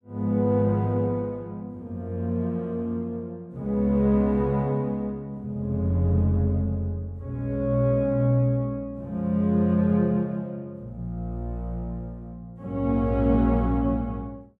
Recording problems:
none

